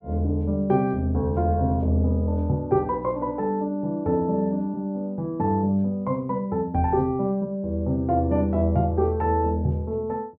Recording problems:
none

